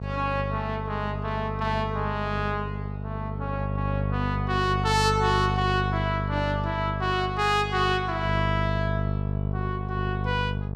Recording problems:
hum; 50 Hz, harmonics up to 900 Hz, SNR 2 dB

